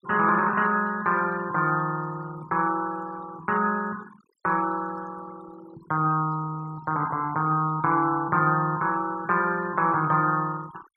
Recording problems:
denoising artefacts; signal-to-artefact ratio 22 dB

